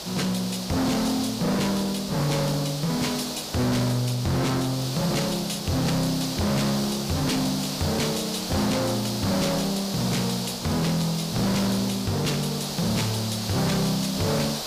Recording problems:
distortion; soft clipping, signal-to-distortion ratio 6 dB
hiss; SNR 6 dB

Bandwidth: 15 kHz